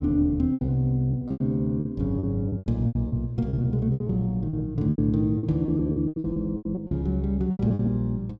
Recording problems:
lost packets; 18% of the sound replaced, filled with repeated pitch periods

